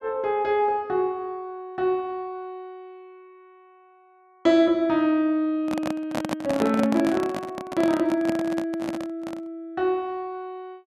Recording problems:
handling noise; from 5.5 to 9.5 s; peak +1 dB vs average level

